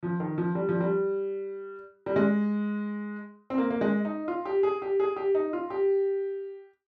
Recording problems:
none

